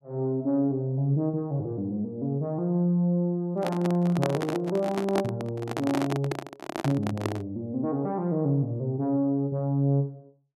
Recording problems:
handling noise; from 3.5 to 7.5 s; peak +2 dB vs average level

